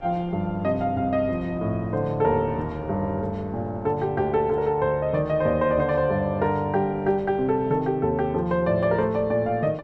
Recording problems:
wind on the microphone; below 490 Hz, SNR 20 dB

